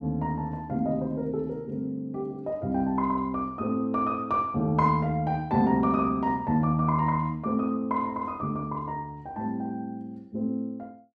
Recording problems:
none

